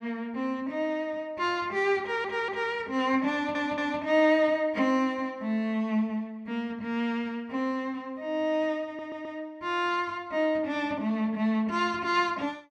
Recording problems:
audio stuttering; at 2 s, at 3.5 s and at 9 s

